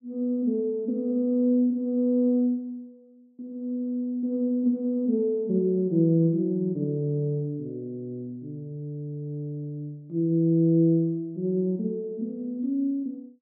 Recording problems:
none

